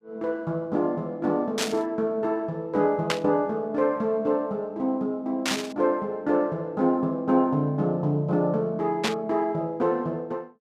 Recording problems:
burst of static; 4 times, first at 1.5 s; peak +4 dB vs average level

